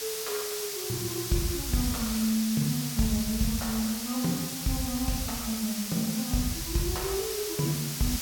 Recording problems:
hiss; slope +2 dB per octave, SNR 3 dB

